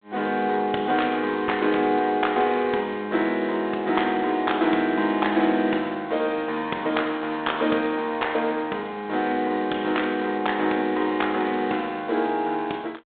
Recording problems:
phone line; 240 Hz to 3.7 kHz, G.726

